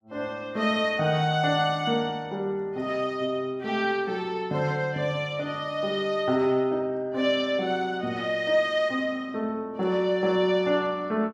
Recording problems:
none

